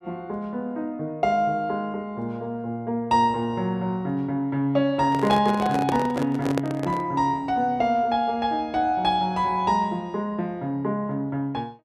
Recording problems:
handling noise; from 5 to 7 s; peak +2 dB vs average level

